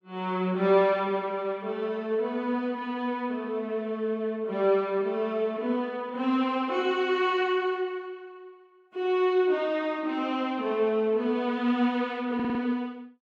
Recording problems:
stutter; at 12 s

